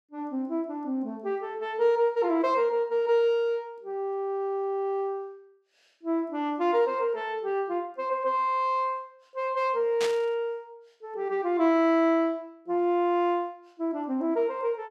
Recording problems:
static burst; at 10 s; peak -2 dB vs average level

